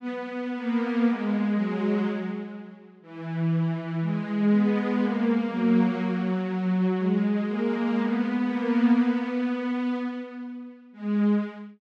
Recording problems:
none

